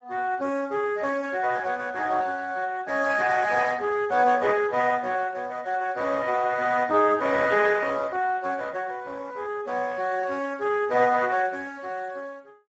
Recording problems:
lossy codec; Speex, log-spectral distance 4 dB, nothing above 7.3 kHz

